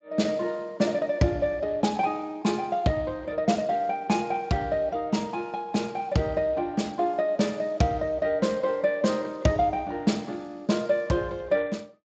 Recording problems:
lossy codec; Speex, log-spectral distance 3 dB, nothing above 7.6 kHz

